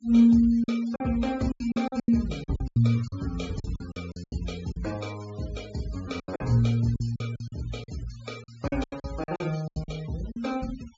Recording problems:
treble missing; nothing above 8 kHz
noise reduction artefacts; signal-to-artefact ratio 20 dB
packet loss; 14% of the sound replaced, filled with silence

